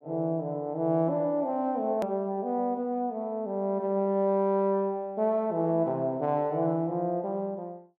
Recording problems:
edit click; at 2 s

